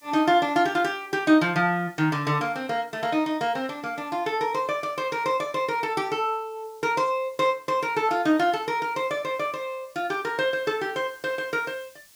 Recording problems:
hiss; slope +2 dB per octave, SNR 29 dB

